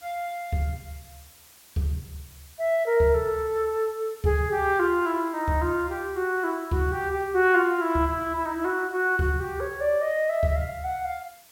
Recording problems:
background hiss; slope 0 dB per octave, SNR 24 dB

